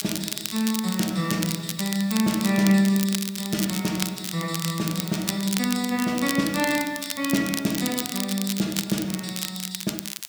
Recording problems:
hiss; slope +3 dB per octave, SNR 22 dB
crackle; vinyl, SNR 6 dB

